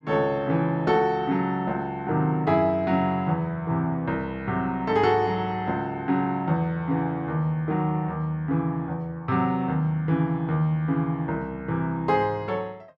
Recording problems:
none

